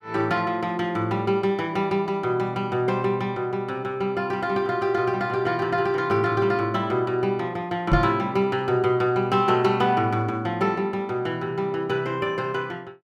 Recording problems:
microphone bump; at 8 s; peak +5 dB vs average level

